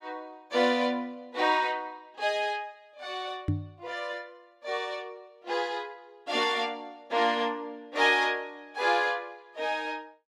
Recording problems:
microphone thump; at 3.5 s; peak +4 dB vs average level

